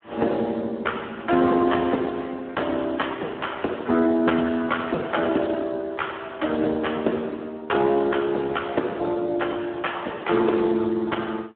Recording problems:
telephone audio; 190 Hz to 3.3 kHz, Speex

